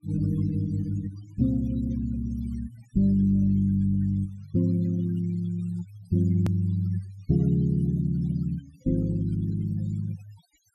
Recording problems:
denoising artefacts; signal-to-artefact ratio 22 dB
click at an edit; at 6.5 s

